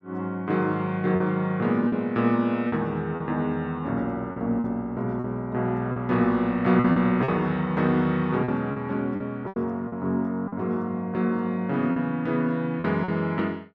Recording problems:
lost packets; 6% of the sound replaced, filled with repeated pitch periods

